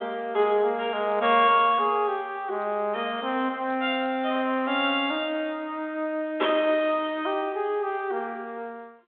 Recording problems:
phone line; 240 Hz to 3.7 kHz, G.726

